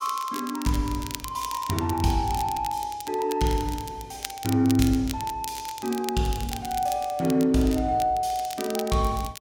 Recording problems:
crackle; vinyl, SNR 12 dB

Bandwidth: 16.5 kHz